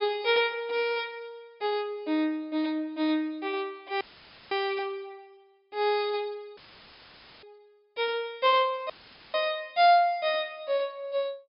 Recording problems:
low-pass filter; nothing above 5.5 kHz
audio cutting out; at 4 s for 0.5 s, at 6.5 s for 1 s and at 9 s; filled with static

